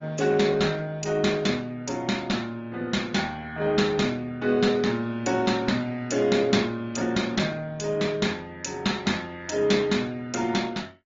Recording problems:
low-pass filter; nothing above 7.1 kHz
codec artefacts; Opus, log-spectral distance 3 dB

